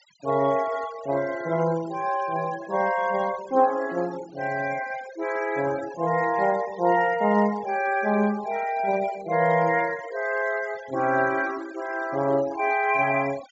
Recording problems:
treble missing; nothing above 8 kHz
denoising artefacts; signal-to-artefact ratio 19 dB

